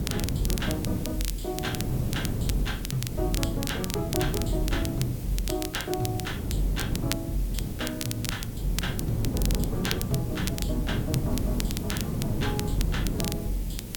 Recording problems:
electrical hum; 60 Hz, harmonics up to 1 kHz, SNR 16 dB
hiss; SNR 12 dB
wind noise; below 240 Hz, SNR 0 dB
crackling; vinyl, SNR 5 dB

